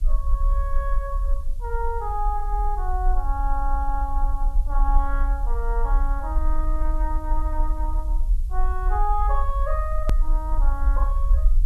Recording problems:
hiss; SNR 27 dB
rumble; below 44 Hz, strongest tone 28 Hz, SNR -5 dB
click at an edit; at 10 s

